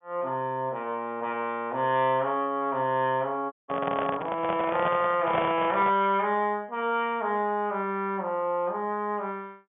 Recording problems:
treble cut off; nothing above 3.5 kHz
handling noise; from 3.5 to 6 s; peak +2 dB vs average level
dropout; at 3.5 s

